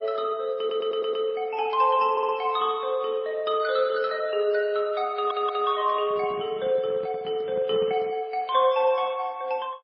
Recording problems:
lossy compression; MP3, log-spectral distance 2 dB, nothing above 5.2 kHz
stutter; at 0.5 s, at 2 s and at 5 s
handling noise; from 6 to 8 s; peak -10 dB vs average level

